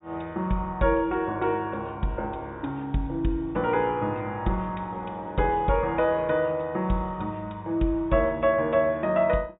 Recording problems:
treble cut off; nothing above 4 kHz

